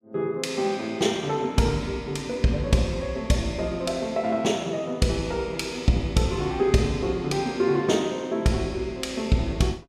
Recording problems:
none

